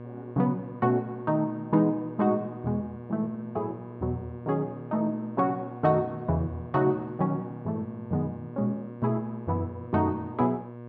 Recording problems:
electrical hum; 60 Hz, harmonics up to 1.2 kHz, SNR 13 dB

